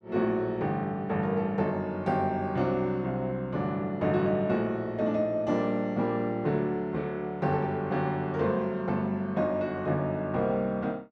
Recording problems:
none

